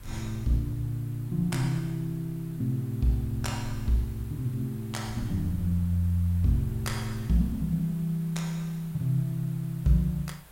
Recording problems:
hiss; SNR 23 dB
wind on the microphone; below 78 Hz, SNR 18 dB

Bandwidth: 16 kHz